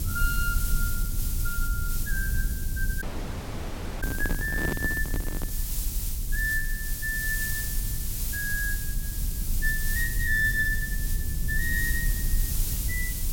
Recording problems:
hiss; SNR 3 dB
low-frequency rumble; below 66 Hz, SNR 2 dB
handling noise; from 3 to 5.5 s; peak +3 dB vs average level
dropout; at 3 s for 1 s

